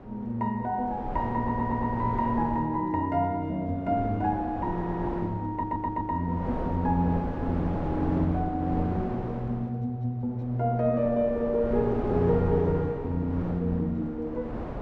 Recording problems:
wind noise; below 570 Hz, SNR 8 dB
audio stuttering; at 1.5 s, at 4.5 s and at 5.5 s

